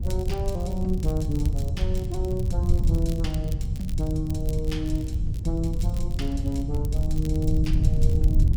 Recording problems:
wind noise; below 90 Hz, SNR -3 dB
crackle; vinyl, SNR 18 dB

